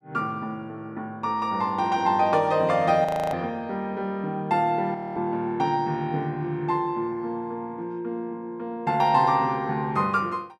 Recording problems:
audio freezing; at 3 s and at 5 s

